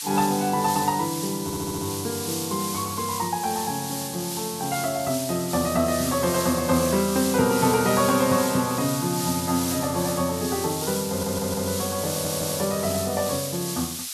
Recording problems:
background hiss; SNR 5 dB
audio stuttering; at 1.5 s, at 11 s and at 12 s

